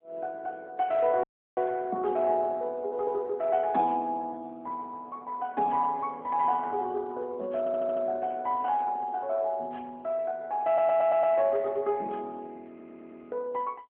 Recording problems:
telephone audio; 280 Hz to 3.4 kHz, AMR-NB
audio cutting out; at 1 s
audio stuttering; at 7.5 s, at 11 s and at 13 s

